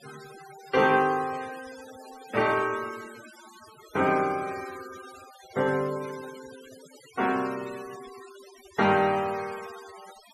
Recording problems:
denoising artefacts; signal-to-artefact ratio 19 dB

